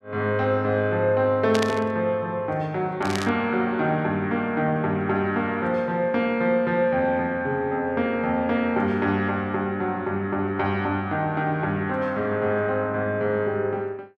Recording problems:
static burst; at 1.5 s and at 3 s; peak 0 dB vs average level

